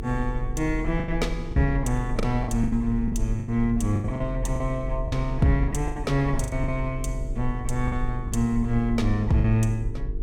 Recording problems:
electrical hum; 50 Hz, harmonics up to 450 Hz, SNR 15 dB
rumble; below 46 Hz, strongest tone 40 Hz, SNR 7 dB
packet loss; 10% of the sound replaced, filled with the last packet

